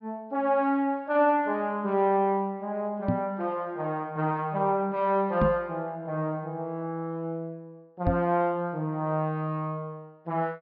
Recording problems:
treble missing; nothing above 5.5 kHz
microphone bump; at 3 s, at 5.5 s and at 8 s; peak +5 dB vs average level

